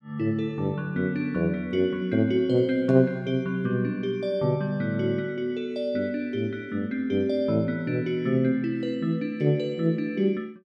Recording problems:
none

